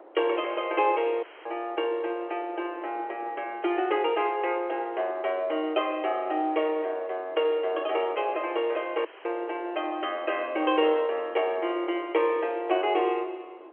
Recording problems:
telephone audio; 280 Hz to 3.3 kHz, G.711
wind noise; below 770 Hz, SNR 21 dB
dropout; at 1 s and at 9 s

